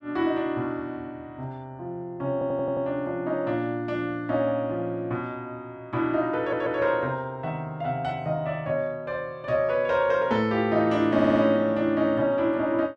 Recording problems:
audio stuttering; at 2.5 s, at 6.5 s and at 11 s

